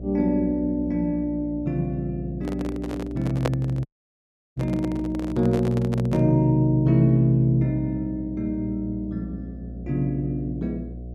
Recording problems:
hum; 60 Hz, harmonics up to 660 Hz, SNR 13 dB
microphone handling noise; from 2.5 to 6 s; peak +2 dB vs average level
audio cutting out; at 4 s for 0.5 s

